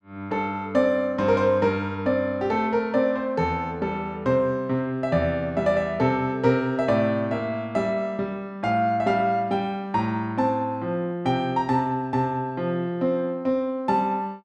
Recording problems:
none

